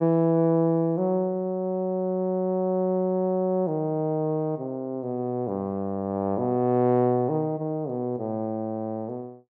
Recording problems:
none

